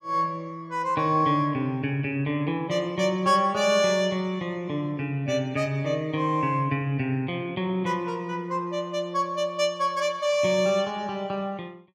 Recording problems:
none

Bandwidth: 14 kHz